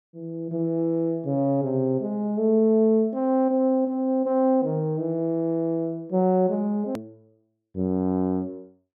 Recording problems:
click at an edit; at 7 s

